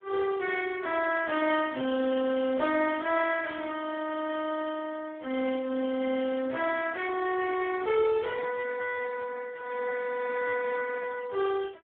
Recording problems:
phone line; 280 Hz to 2.8 kHz, Speex

